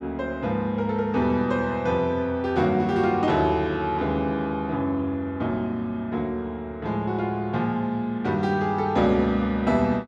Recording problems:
none

